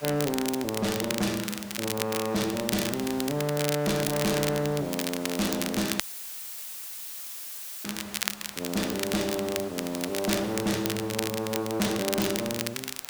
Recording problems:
distortion; hard clipping, uneven, signal-to-distortion ratio 6 dB
background hiss; slope -2 dB per octave, SNR 15 dB
crackle; vinyl, SNR 4 dB
audio cutting out; at 6 s for 2 s; filled with static

